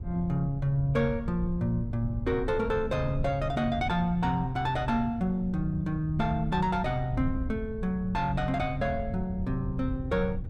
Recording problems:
wind on the microphone; below 120 Hz, SNR 8 dB

